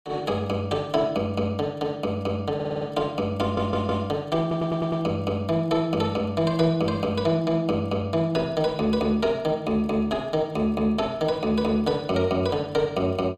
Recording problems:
stutter; at 2.5 s, at 3.5 s and at 4.5 s

